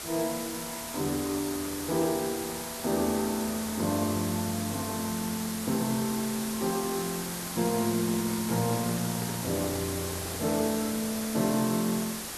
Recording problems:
hiss; slope -2 dB per octave, SNR 5 dB
microphone handling noise; from 7.5 to 11 s; peak -5 dB vs average level

